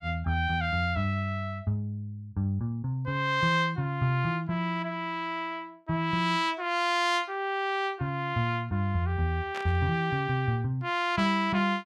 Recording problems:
static burst; at 9.5 s; peak -6 dB vs average level

